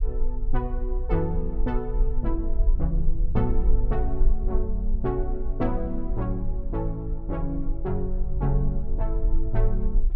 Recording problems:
low-frequency rumble; below 40 Hz, strongest tone 18 Hz, SNR -1 dB

